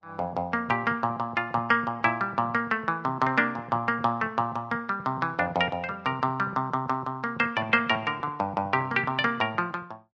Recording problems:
lossy codec; Vorbis, log-spectral distance 2 dB

